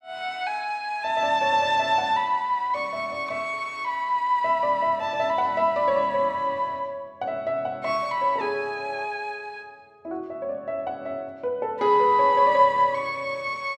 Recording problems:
none

